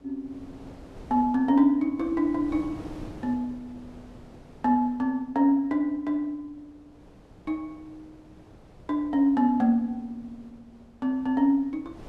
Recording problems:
wind on the microphone; below 490 Hz, SNR 22 dB

